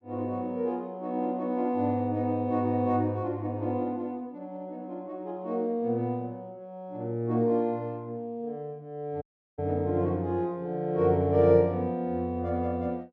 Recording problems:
dropout; at 9 s

